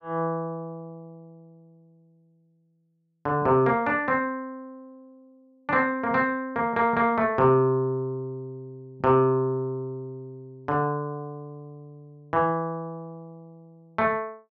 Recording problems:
none

